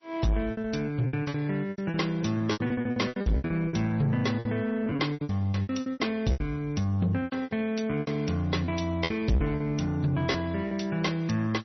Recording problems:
codec artefacts; MP3, log-spectral distance 3 dB, nothing above 5.8 kHz
distortion; soft clipping, signal-to-distortion ratio 12 dB
packet loss; 18% of the sound replaced, filled with repeated pitch periods

